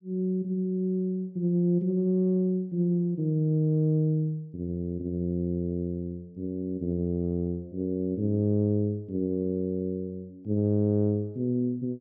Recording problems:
none

